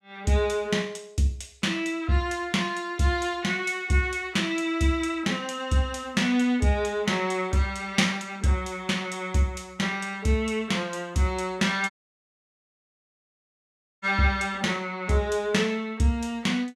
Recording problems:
dropout; at 12 s for 2 s

